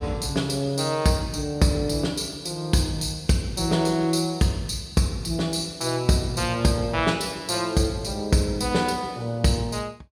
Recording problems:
none

